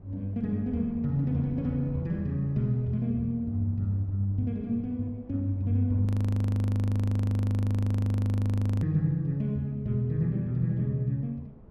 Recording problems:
wind on the microphone; below 210 Hz, SNR 22 dB
frozen audio; at 6 s for 3 s

